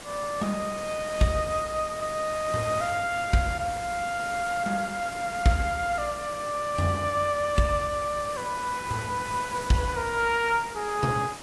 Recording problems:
lossy codec; AAC, log-spectral distance 4 dB, nothing above 11 kHz
hiss; slope -3 dB per octave, SNR 12 dB

